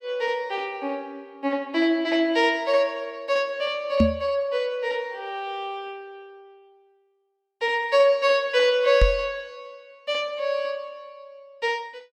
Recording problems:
knock on the microphone; at 4 s and at 9 s; peak +8 dB vs average level

